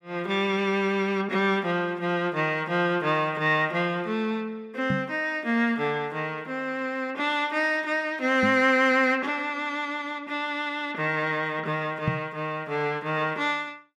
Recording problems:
microphone bump; at 5 s, at 8.5 s and at 12 s; peak +2 dB vs average level

